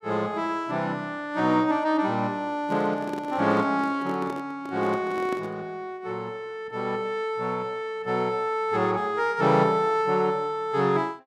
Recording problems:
handling noise; from 2.5 to 5.5 s; peak -5 dB vs average level

